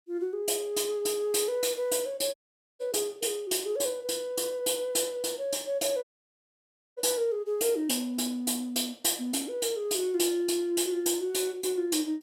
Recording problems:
audio cutting out; at 2.5 s and at 6 s for 1 s

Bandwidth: 16.5 kHz